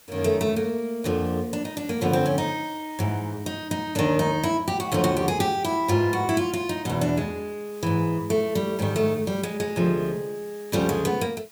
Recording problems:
background hiss; slope -1 dB per octave, SNR 23 dB

